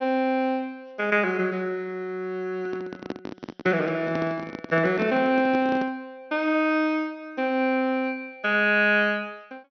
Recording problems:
treble cut off; nothing above 5.9 kHz
microphone handling noise; from 2.5 to 6 s; peak -3 dB vs average level

